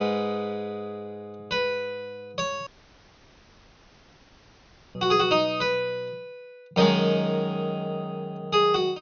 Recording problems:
treble cut off; nothing above 6.3 kHz
dropout; at 2.5 s for 2.5 s

